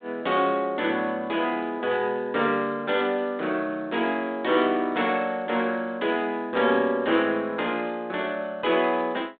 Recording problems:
telephone audio; 190 Hz to 3.7 kHz, G.726

